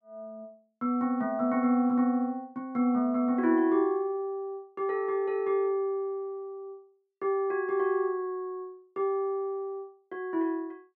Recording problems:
none

